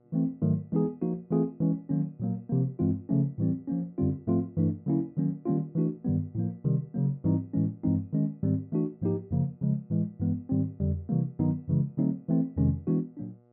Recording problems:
hum; 60 Hz, harmonics up to 1.4 kHz, SNR 34 dB

